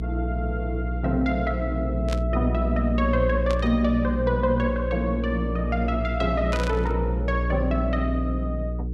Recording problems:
electrical hum; 60 Hz, harmonics up to 480 Hz, SNR 2 dB
burst of static; at 2 s, at 3.5 s and at 6.5 s; peak -4 dB vs average level

